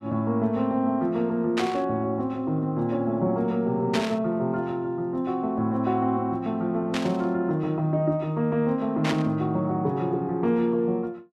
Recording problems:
static burst; 4 times, first at 1.5 s; peak 0 dB vs average level

